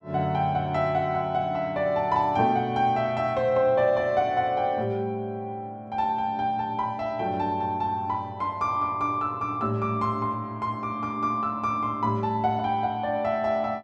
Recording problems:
none

